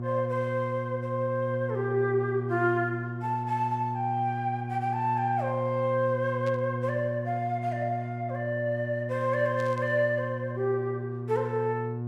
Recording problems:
hum; 60 Hz, harmonics up to 720 Hz, SNR 5 dB
static burst; at 6.5 s and at 9.5 s; peak -13 dB vs average level

